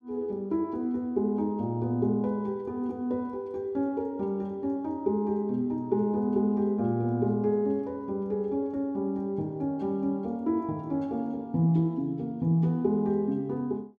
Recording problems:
none

